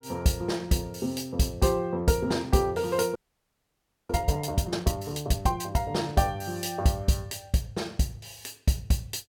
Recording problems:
frozen audio; at 3 s for 1 s

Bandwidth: 17 kHz